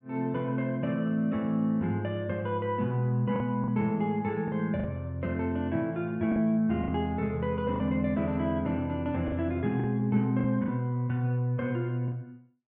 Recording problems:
lost packets; 4% of the sound replaced, filled with the last packet

